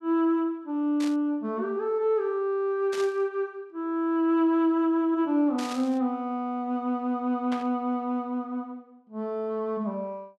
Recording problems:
burst of static; 4 times, first at 1 s; peak -7 dB vs average level

